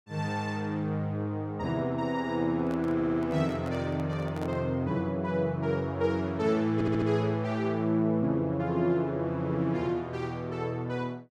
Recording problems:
microphone handling noise; from 2.5 to 4.5 s; peak -7 dB vs average level
audio stuttering; at 3 s and at 6.5 s

